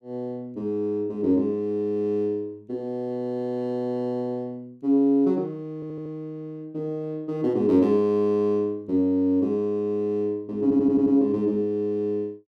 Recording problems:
audio stuttering; at 6 s and at 11 s

